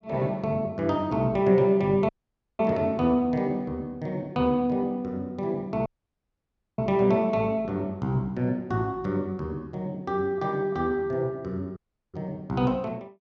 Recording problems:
audio cutting out; at 2 s for 0.5 s, at 6 s for 1 s and at 12 s

